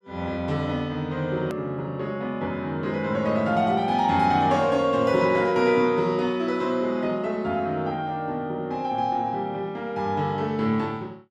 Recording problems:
click at an edit; at 1.5 s

